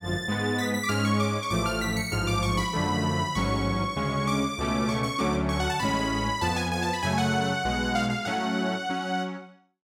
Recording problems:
none

